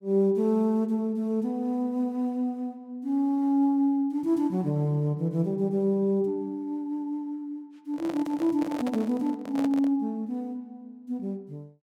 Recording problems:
microphone handling noise; from 8 to 10 s; peak -5 dB vs average level

